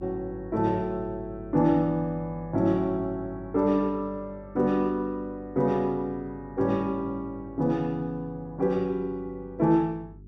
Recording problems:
hum; 50 Hz, harmonics up to 400 Hz, SNR 19 dB

